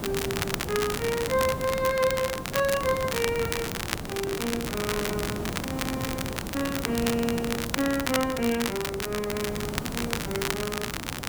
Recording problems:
background hiss; slope -7 dB per octave, SNR 6 dB
crackle; vinyl, SNR 3 dB
microphone handling noise; from 3.5 to 6 s; peak -5 dB vs average level

